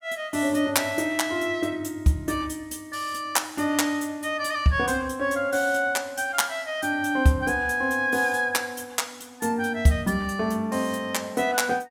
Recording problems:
none

